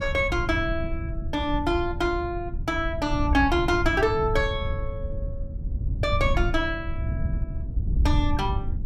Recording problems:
wind noise; below 96 Hz, SNR 4 dB

